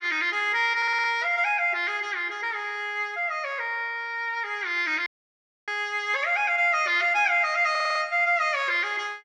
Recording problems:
stutter; at 1 s and at 7.5 s
dropout; at 5 s for 0.5 s

